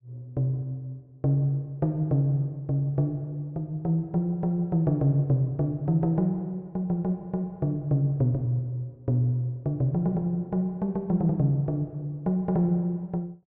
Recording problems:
none

